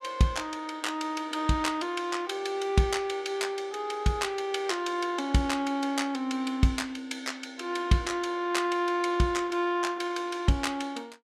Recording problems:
none

